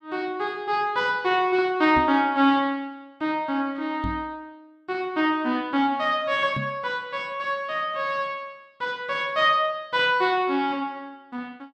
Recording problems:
microphone thump; at 2 s, at 4 s and at 6.5 s; peak -3 dB vs average level

